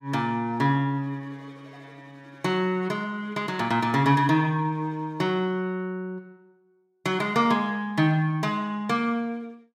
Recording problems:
none

